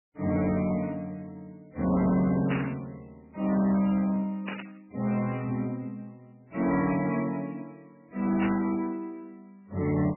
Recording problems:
lossy compression; MP3, log-spectral distance 3 dB, nothing above 2.3 kHz
distortion; soft clipping, signal-to-distortion ratio 11 dB
burst of static; at 2.5 s, at 4.5 s and at 8.5 s; peak -3 dB vs average level

